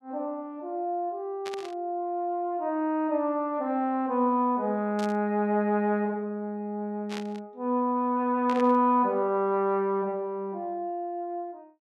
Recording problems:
burst of static; 4 times, first at 1.5 s; peak -7 dB vs average level

